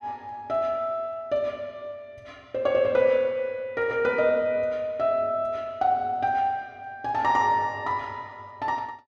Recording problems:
none

